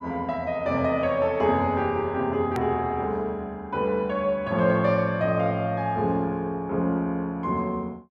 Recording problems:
click at an edit; at 2.5 s

